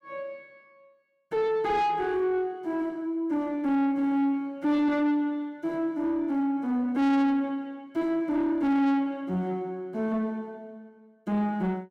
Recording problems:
distortion; soft clipping, signal-to-distortion ratio 10 dB

